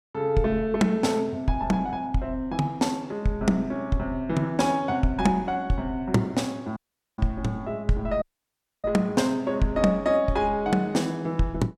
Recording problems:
dropout; at 7 s and at 8 s for 0.5 s

